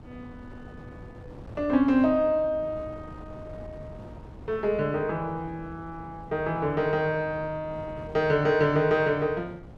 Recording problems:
wind on the microphone; below 350 Hz, SNR 19 dB

